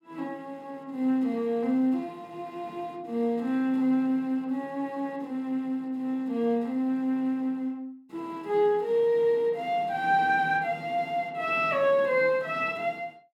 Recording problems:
none

